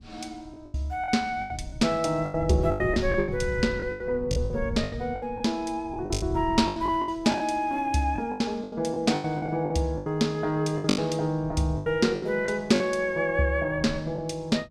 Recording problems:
wind noise; below 140 Hz, SNR 11 dB
packet loss; 14% of the sound replaced, filled with the last packet

